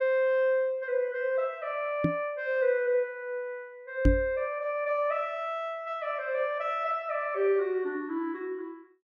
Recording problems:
microphone bump; at 2 s and at 4 s; peak +9 dB vs average level

